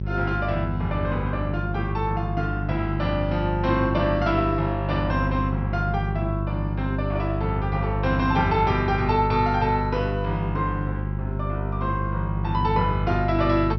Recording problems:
treble cut off; nothing above 5.9 kHz
electrical hum; 50 Hz, harmonics up to 400 Hz, SNR 2 dB

